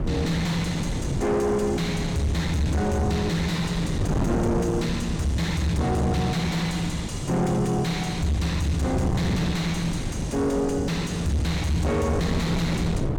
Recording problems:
distorted audio; soft clipping, signal-to-distortion ratio 7 dB
wind on the microphone; below 330 Hz, SNR 4 dB

